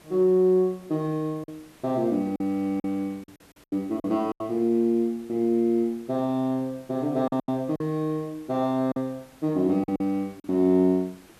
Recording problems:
background hiss; slope -4 dB per octave, SNR 28 dB
packet loss; 6% of the sound replaced, filled with silence

